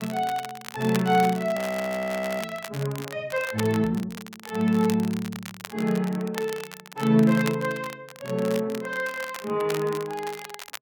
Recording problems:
crackling; vinyl, SNR 14 dB
frozen audio; at 1.5 s for 1 s

